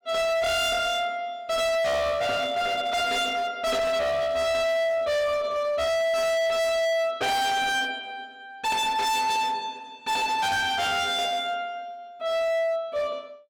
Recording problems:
distortion; hard clipping, signal-to-distortion ratio 6 dB

